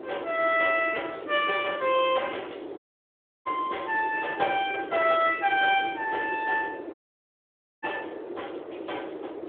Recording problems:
telephone audio; 300 Hz to 3.4 kHz, Speex
wind noise; below 550 Hz, SNR 12 dB
audio cutting out; at 3 s for 0.5 s and at 7 s for 1 s

